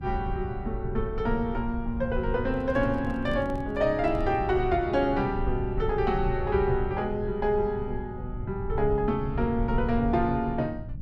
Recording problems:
hum; 60 Hz, harmonics up to 600 Hz, SNR 19 dB
rumble; below 94 Hz, SNR 8 dB
microphone handling noise; from 2.5 to 4.5 s; peak -8 dB vs average level

